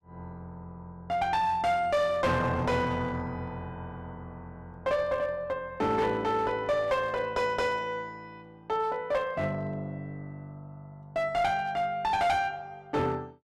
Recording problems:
distortion; hard clipping, uneven, signal-to-distortion ratio 11 dB

